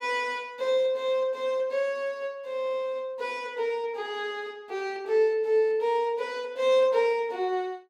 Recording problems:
none

